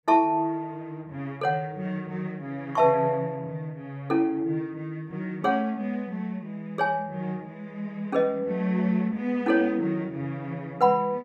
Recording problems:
none

